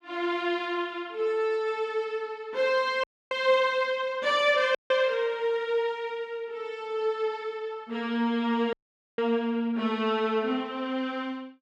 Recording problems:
audio cutting out; at 3 s, at 5 s and at 8.5 s

